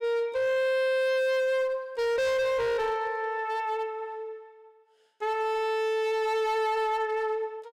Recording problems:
distorted audio; hard clipping, signal-to-distortion ratio 7 dB

